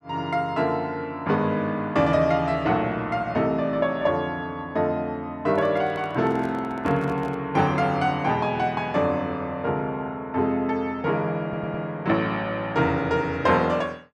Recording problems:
handling noise; from 5.5 to 7.5 s; peak -7 dB vs average level
stutter; at 11 s

